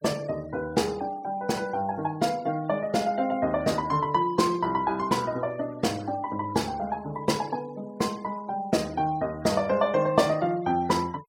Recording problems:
noise reduction artefacts; signal-to-artefact ratio 24 dB

